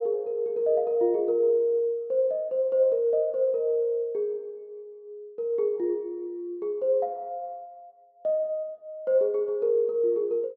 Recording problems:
none

